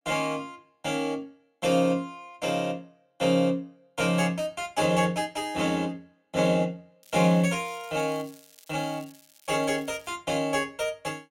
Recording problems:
crackle; from 7 to 10 s; loose cable, SNR 25 dB

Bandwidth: 16 kHz